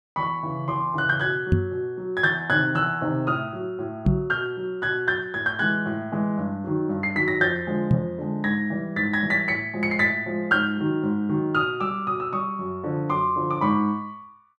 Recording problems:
microphone thump; at 1.5 s, at 4 s and at 8 s; peak +8 dB vs average level

